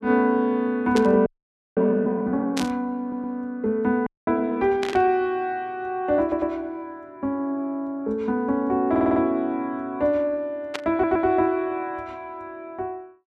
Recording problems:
burst of static; 4 times, first at 1 s; peak -2 dB vs average level
frozen audio; at 1.5 s for 0.5 s and at 4 s
audio stuttering; 4 times, first at 3 s

